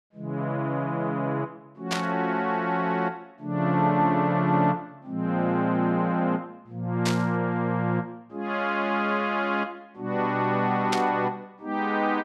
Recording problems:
static burst; at 2 s, at 7 s and at 11 s; peak +2 dB vs average level

